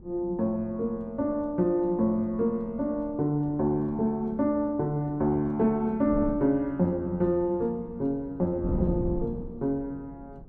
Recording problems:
wind noise; below 220 Hz, SNR 14 dB

